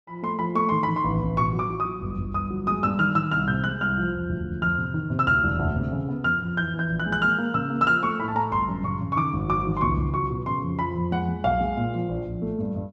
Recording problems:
none

